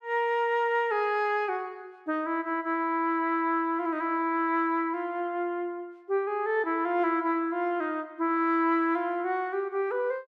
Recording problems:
none

